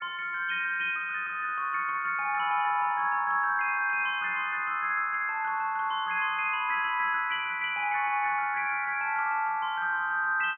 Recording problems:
low-pass filter; nothing above 3.2 kHz

